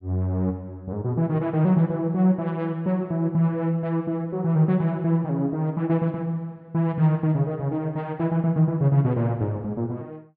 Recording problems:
low-pass filter; nothing above 5.5 kHz

